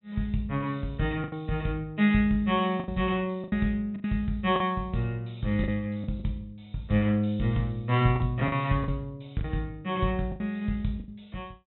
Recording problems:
low-pass filter; nothing above 4 kHz
packet loss; 7% of the sound replaced, filled with the last packet

